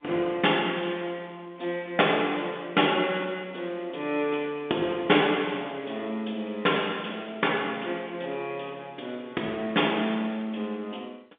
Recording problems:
telephone audio; 300 Hz to 3.6 kHz, G.711

